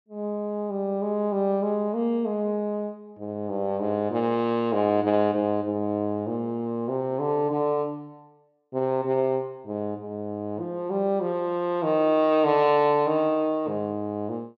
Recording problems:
low-pass filter; nothing above 8 kHz

